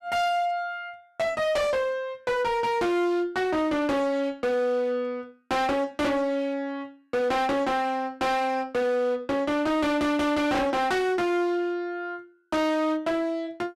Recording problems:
distortion; hard clipping, signal-to-distortion ratio 7 dB

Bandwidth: 13.5 kHz